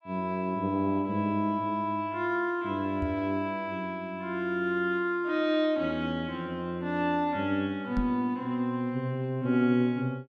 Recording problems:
microphone bump; at 3 s and at 8 s; peak +1 dB vs average level

